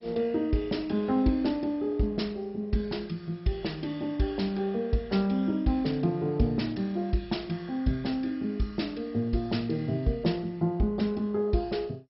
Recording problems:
lossy compression; MP2, log-spectral distance 3 dB, nothing above 5.5 kHz

